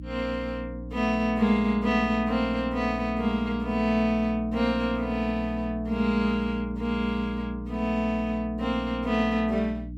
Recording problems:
hum; 60 Hz, harmonics up to 300 Hz, SNR 11 dB

